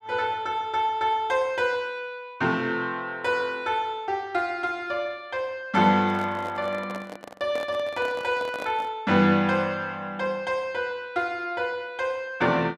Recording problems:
handling noise; from 6 to 9 s; peak -6 dB vs average level

